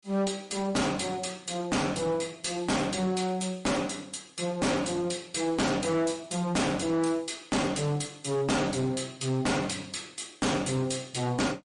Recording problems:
lossy compression; MP3, log-spectral distance 6 dB, nothing above 10.4 kHz
distorted audio; hard clipping, uneven, signal-to-distortion ratio 6 dB

